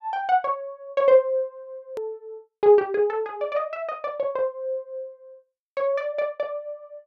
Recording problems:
click at an edit; at 2 s

